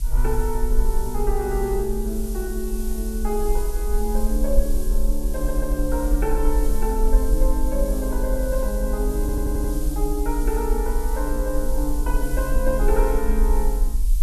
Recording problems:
hiss; SNR 11 dB
low-frequency rumble; below 48 Hz, SNR -1 dB
audio stuttering; at 5.5 s and at 9 s

